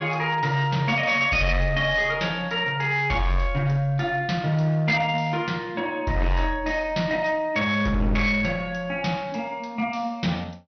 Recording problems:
treble cut off; nothing above 6 kHz
distortion; hard clipping, signal-to-distortion ratio 11 dB

